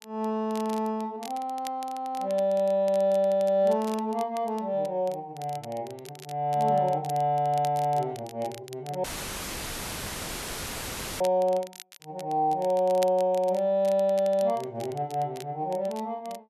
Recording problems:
crackling; vinyl, SNR 21 dB
audio cutting out; at 9 s for 2 s; filled with static

